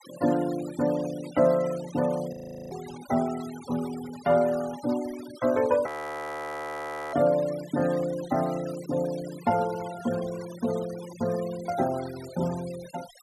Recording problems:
noise reduction artefacts; signal-to-artefact ratio 17 dB
audio freezing; at 2.5 s and at 6 s for 1.5 s

